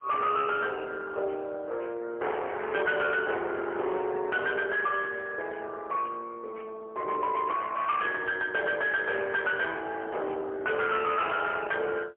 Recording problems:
telephone audio; 320 Hz to 3.3 kHz, AMR-NB, then MP3
distortion; soft clipping, signal-to-distortion ratio 9 dB

